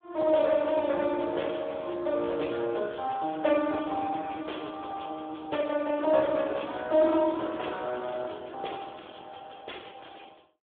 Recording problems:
telephone audio; 280 Hz to 3.6 kHz, Speex

